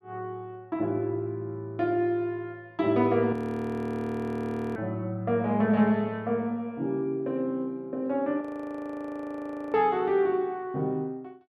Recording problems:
frozen audio; at 3.5 s for 1.5 s and at 8.5 s for 1.5 s

